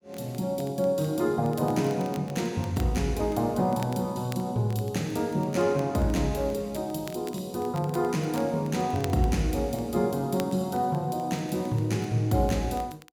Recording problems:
crackle; vinyl, SNR 23 dB

